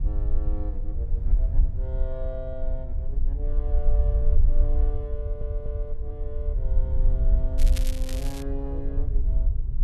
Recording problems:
low-frequency rumble; below 52 Hz, strongest tone 24 Hz, SNR -12 dB
wind noise; below 420 Hz, SNR 14 dB
stutter; at 5 s
crackling; at 7.5 s; loose cable, SNR 2 dB

